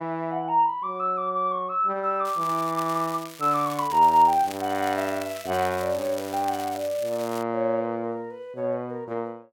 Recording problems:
crackling; from 2.5 to 7.5 s; loose cable, SNR 16 dB

